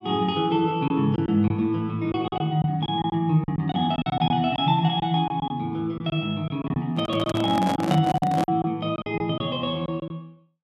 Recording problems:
lost packets; 10% of the sound replaced, filled with silence
microphone handling noise; from 7 to 8.5 s; peak 0 dB vs average level

